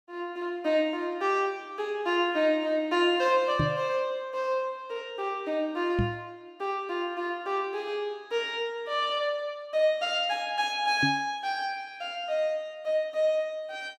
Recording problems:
microphone bump; at 3.5 s, at 6 s and at 11 s; peak +4 dB vs average level

